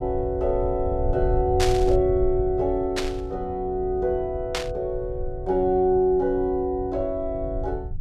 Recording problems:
rumble; below 82 Hz, SNR 9 dB
burst of static; at 1.5 s, at 3 s and at 4.5 s; peak +1 dB vs average level

